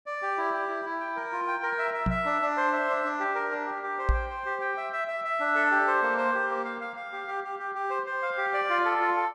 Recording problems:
microphone thump; at 2 s and at 4 s; peak +5 dB vs average level

